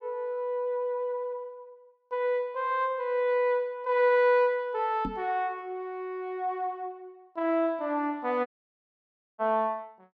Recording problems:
microphone thump; at 5 s; peak -3 dB vs average level
audio cutting out; at 8.5 s for 1 s

